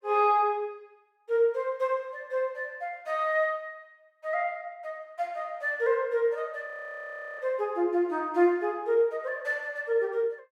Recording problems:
audio freezing; at 6.5 s for 0.5 s

